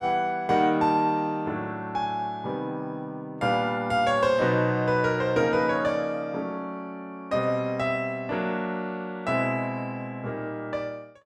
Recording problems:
none

